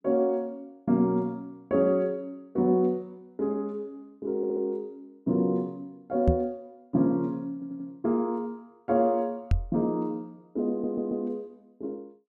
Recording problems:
stutter; at 4.5 s, at 7.5 s and at 11 s
microphone thump; at 6.5 s and at 9.5 s; peak +8 dB vs average level

